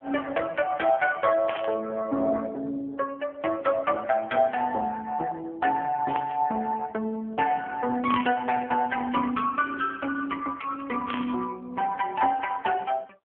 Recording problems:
phone line; 240 Hz to 2.6 kHz, AMR-NB
burst of static; 4 times, first at 1.5 s; peak -3 dB vs average level

